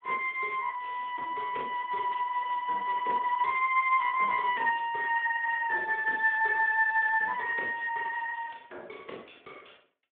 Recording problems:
telephone audio; 320 Hz to 3.4 kHz, Speex

